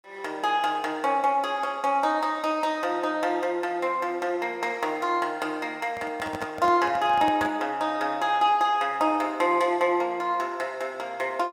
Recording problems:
microphone handling noise; from 6 to 7.5 s; peak -5 dB vs average level

